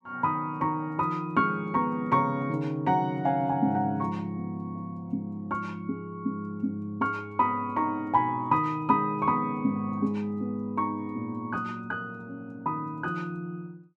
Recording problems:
none

